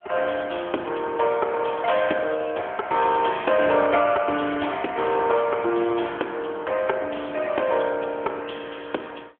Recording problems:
telephone audio; 280 Hz to 3.5 kHz, AMR-NB

